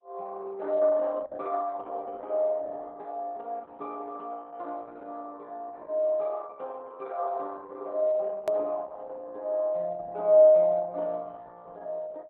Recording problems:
codec artefacts; Opus, log-spectral distance 2 dB
hard cut with a click; at 8.5 s

